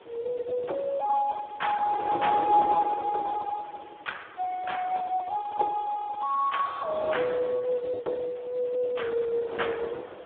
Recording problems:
phone line; 260 Hz to 3.9 kHz, Speex
hiss; SNR 28 dB
wind on the microphone; below 860 Hz, SNR 10 dB

